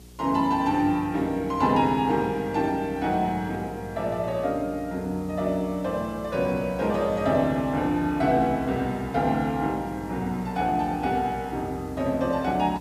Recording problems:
electrical hum; 60 Hz, harmonics up to 420 Hz, SNR 19 dB
background hiss; SNR 27 dB

